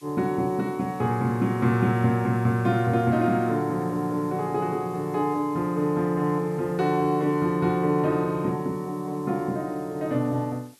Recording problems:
background hiss; slope +1 dB per octave, SNR 28 dB

